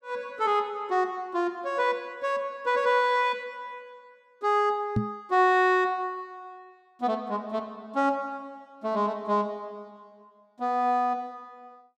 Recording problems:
microphone bump; at 5 s; peak +4 dB vs average level

